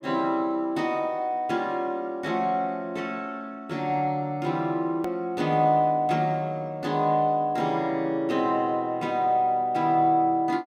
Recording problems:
click at an edit; at 5 s

